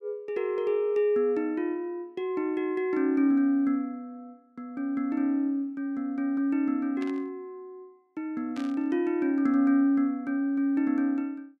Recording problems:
burst of static; at 7 s and at 8.5 s; peak -13 dB vs average level

